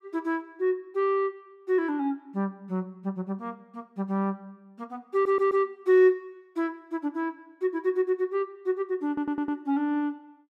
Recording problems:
stutter; at 5 s and at 9 s

